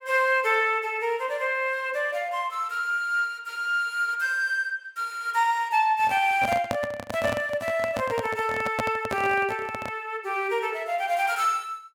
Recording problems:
microphone handling noise; from 6 to 10 s; peak +1 dB vs average level

